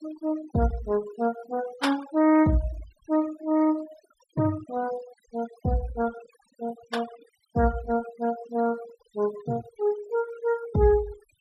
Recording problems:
noise reduction artefacts; signal-to-artefact ratio 16 dB

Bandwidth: 14.5 kHz